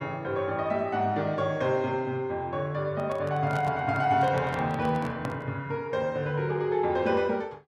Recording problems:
handling noise; from 3 to 5.5 s; peak -5 dB vs average level

